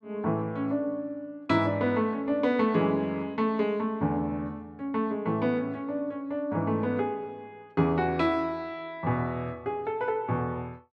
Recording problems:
none

